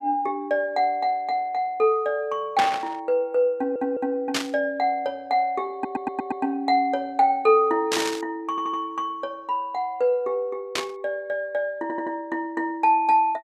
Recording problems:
burst of static; 4 times, first at 2.5 s; peak +3 dB vs average level
audio stuttering; 4 times, first at 3.5 s

